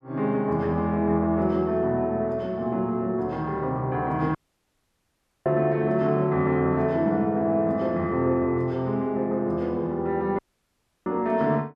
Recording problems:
audio cutting out; at 4.5 s for 1 s and at 10 s for 0.5 s

